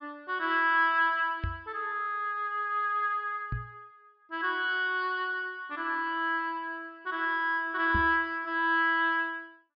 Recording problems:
treble missing; nothing above 5.5 kHz
microphone bump; at 1.5 s, at 3.5 s and at 8 s; peak -1 dB vs average level

